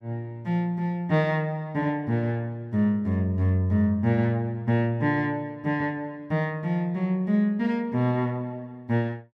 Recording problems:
none

